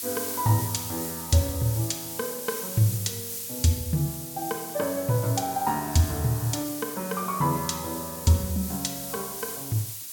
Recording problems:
hiss; SNR 6 dB

